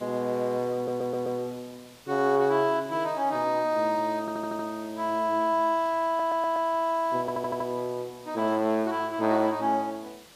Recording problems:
background hiss; slope -1 dB per octave, SNR 23 dB
audio stuttering; 4 times, first at 1 s

